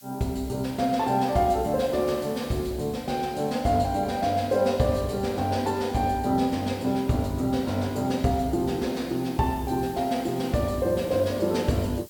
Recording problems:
background hiss; slope +3 dB per octave, SNR 22 dB

